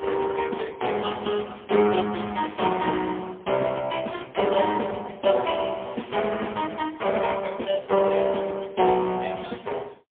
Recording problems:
phone line; 240 Hz to 2.9 kHz, AMR-NB, then MP3

